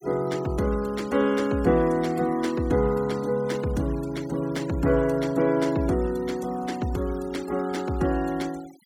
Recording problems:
noise reduction artefacts; signal-to-artefact ratio 22 dB

